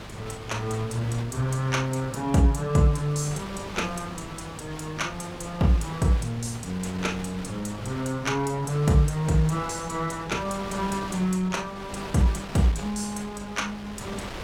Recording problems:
hum; 50 Hz, harmonics up to 500 Hz, SNR 22 dB
wind noise; below 2.5 kHz, SNR 13 dB

